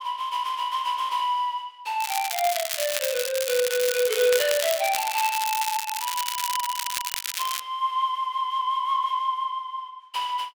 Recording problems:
crackle; from 2 to 7.5 s; loose cable, SNR 3 dB

